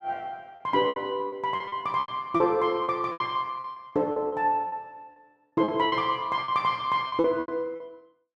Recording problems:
packet loss; 14% of the sound replaced, filled with repeated pitch periods

